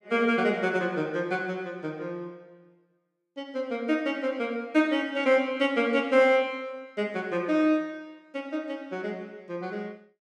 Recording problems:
none

